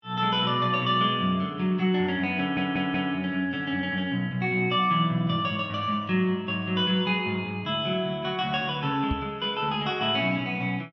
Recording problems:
stutter; at 2.5 s
microphone bump; at 9 s; peak -1 dB vs average level

